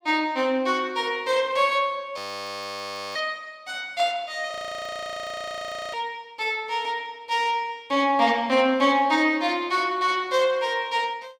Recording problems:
audio freezing; at 2 s for 1 s and at 4.5 s for 1.5 s

